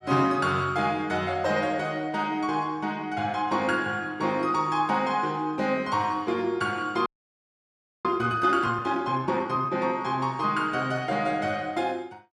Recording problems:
audio freezing; at 7 s for 1 s

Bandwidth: 12.5 kHz